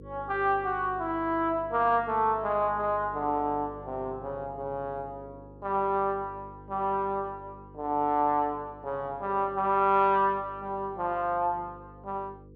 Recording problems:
hum; 50 Hz, harmonics up to 500 Hz, SNR 20 dB

